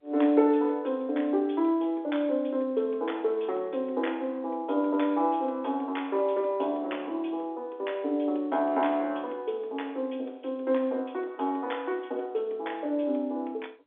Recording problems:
phone line; 260 Hz to 3.6 kHz, G.711

